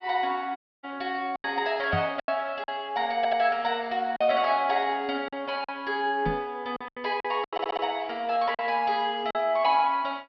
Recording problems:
treble missing; nothing above 5.5 kHz
packet loss; 7% of the sound replaced, filled with silence
audio cutting out; at 0.5 s
microphone thump; at 2 s and at 6.5 s; peak 0 dB vs average level
stutter; at 3 s and at 7.5 s

